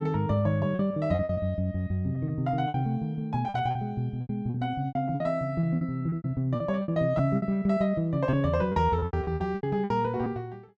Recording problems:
packet loss; 14% of the sound replaced, filled with repeated pitch periods

